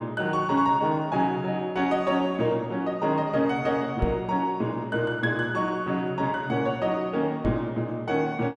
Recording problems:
microphone thump; at 4 s and at 7.5 s; peak +2 dB vs average level

